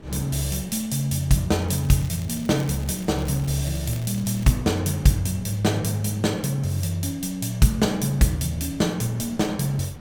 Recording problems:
wind on the microphone; below 340 Hz, SNR 22 dB
crackle; from 1.5 to 4.5 s; loose cable, SNR 21 dB

